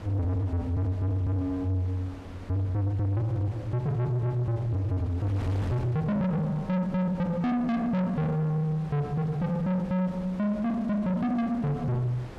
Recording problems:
distortion; soft clipping, signal-to-distortion ratio 8 dB
wind noise; below 690 Hz, SNR 16 dB

